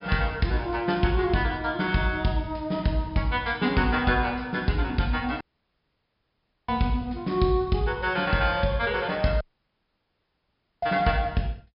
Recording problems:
treble cut off; nothing above 5.5 kHz
dropout; at 5.5 s for 1.5 s and at 9.5 s for 1.5 s

